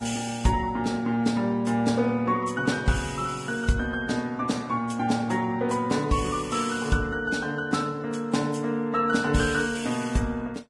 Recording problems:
lossy codec; Vorbis, log-spectral distance 4 dB, nothing above 10.7 kHz

